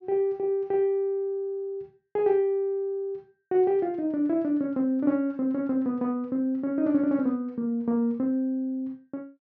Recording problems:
low-pass filter; nothing above 6.8 kHz

